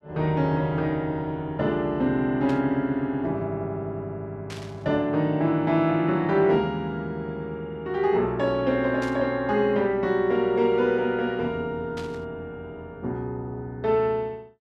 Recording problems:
burst of static; 4 times, first at 2.5 s; peak -11 dB vs average level

